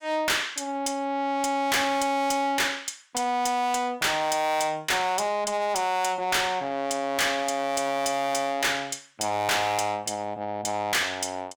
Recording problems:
distortion; soft clipping, signal-to-distortion ratio 6 dB

